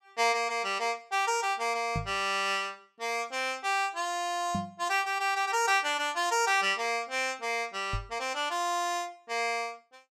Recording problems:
microphone bump; at 2 s, at 4.5 s and at 8 s; peak -1 dB vs average level

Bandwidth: 16.5 kHz